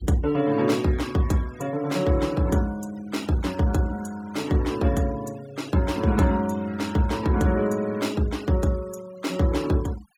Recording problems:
noise reduction artefacts; signal-to-artefact ratio 21 dB

